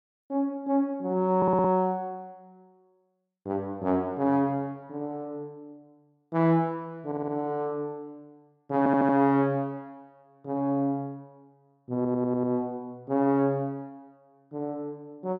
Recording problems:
audio stuttering; 4 times, first at 1.5 s

